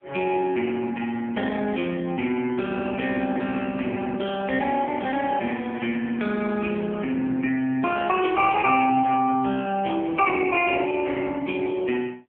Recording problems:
telephone audio; 190 Hz to 3.1 kHz, AMR-NB

